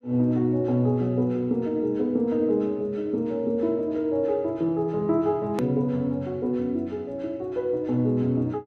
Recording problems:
hard cut with a click; at 5.5 s

